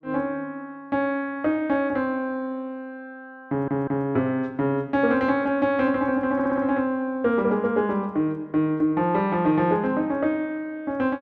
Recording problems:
stutter; at 3.5 s and at 6.5 s

